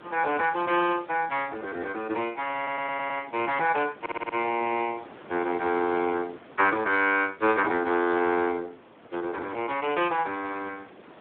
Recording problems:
telephone audio; 220 Hz to 3.7 kHz, Speex
wind on the microphone; below 1.4 kHz, SNR 21 dB
stutter; at 2.5 s and at 4 s

